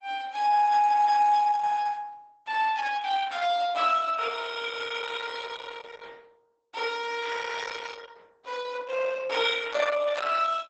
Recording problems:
lossy codec; Opus, log-spectral distance 5 dB, nothing above 7.8 kHz

